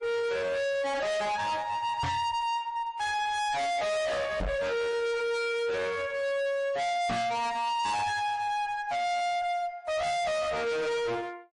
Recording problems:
codec artefacts; MP3, then AAC, log-spectral distance 2 dB, nothing above 10.4 kHz
distortion; hard clipping, uneven, signal-to-distortion ratio 5 dB
microphone thump; at 2 s, at 4.5 s and at 7 s; peak +5 dB vs average level

